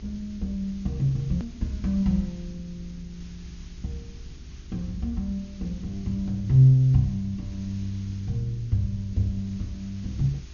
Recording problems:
treble missing; nothing above 6.8 kHz
hum; 50 Hz, harmonics up to 400 Hz, SNR 25 dB
background hiss; slope +2 dB per octave, SNR 27 dB
rumble; below 72 Hz, SNR 18 dB
edit click; at 1.5 s

